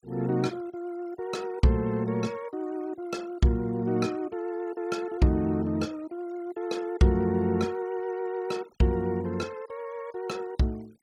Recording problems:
denoising artefacts; signal-to-artefact ratio 25 dB

